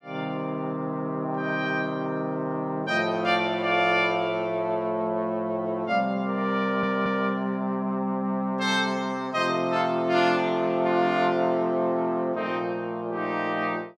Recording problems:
audio stuttering; at 6.5 s

